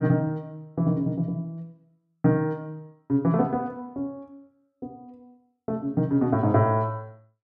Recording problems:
none

